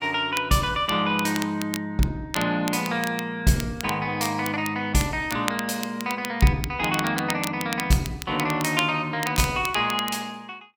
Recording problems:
crackling; vinyl, SNR 11 dB

